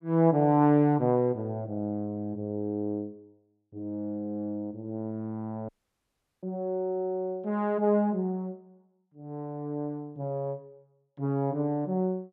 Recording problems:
audio cutting out; at 5.5 s for 0.5 s

